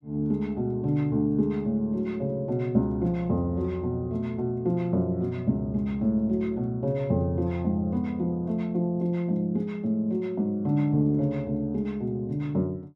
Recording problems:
none

